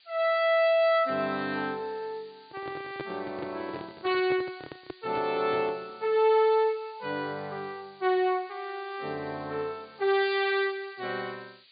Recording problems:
treble cut off; nothing above 4.7 kHz
hiss; SNR 27 dB
handling noise; from 2.5 to 6 s; peak -5 dB vs average level

